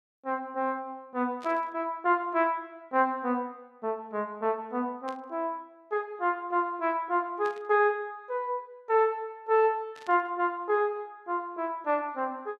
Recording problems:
static burst; 4 times, first at 1.5 s; peak -13 dB vs average level

